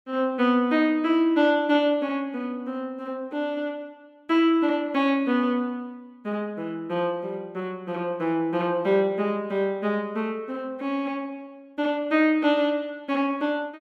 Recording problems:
none

